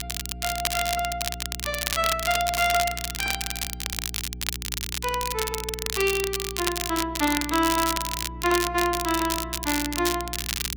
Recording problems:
hum; 60 Hz, harmonics up to 420 Hz, SNR 12 dB
crackling; vinyl, SNR 2 dB

